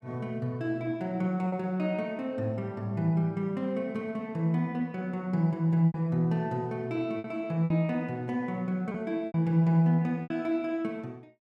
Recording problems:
packet loss; 4% of the sound replaced, filled with repeated pitch periods

